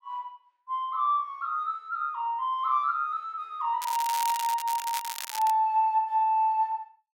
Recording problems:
crackling; from 4 to 5.5 s; loose cable, SNR 9 dB

